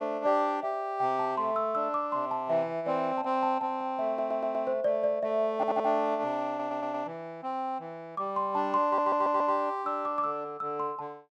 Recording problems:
audio stuttering; 4 times, first at 4 s

